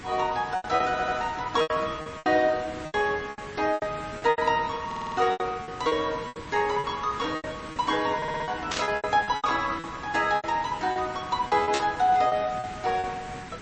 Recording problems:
lossy compression; MP3, log-spectral distance 5 dB, nothing above 6.9 kHz
hiss; SNR 14 dB
lost packets; 14% of the sound replaced, filled with repeated pitch periods
audio stuttering; at 1 s, at 5 s and at 8 s
burst of static; at 8.5 s and at 12 s; peak 0 dB vs average level

